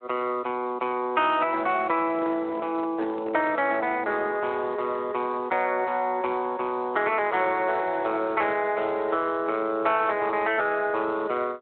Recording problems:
phone line; 280 Hz to 3.1 kHz, Speex
handling noise; from 2 to 4 s; peak -8 dB vs average level

